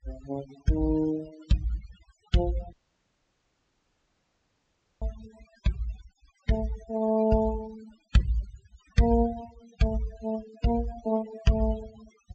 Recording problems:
low-pass filter; nothing above 8 kHz
denoising artefacts; signal-to-artefact ratio 17 dB
audio cutting out; at 2.5 s for 2.5 s

